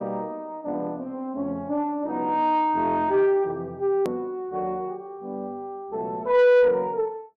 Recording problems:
distorted audio; soft clipping, signal-to-distortion ratio 11 dB
hard cut with a click; at 4 s

